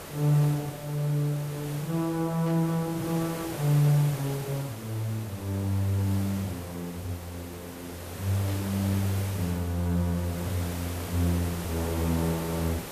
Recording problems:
hiss; slope -5 dB per octave, SNR 10 dB
static burst; at 2.5 s and at 8.5 s; peak -13 dB vs average level

